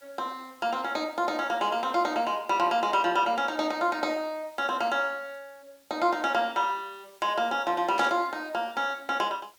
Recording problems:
background hiss; slope +1 dB per octave, SNR 29 dB
static burst; at 8 s; peak -5 dB vs average level

